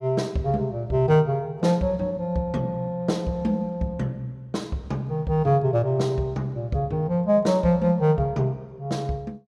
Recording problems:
none

